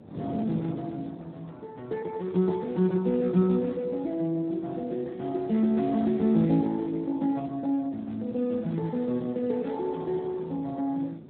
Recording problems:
telephone audio; 110 Hz to 2.2 kHz, Speex
wind noise; below 390 Hz, SNR 17 dB

